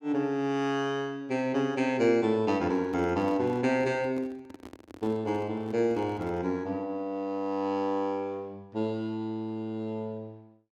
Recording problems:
handling noise; from 2.5 to 6.5 s; peak -9 dB vs average level

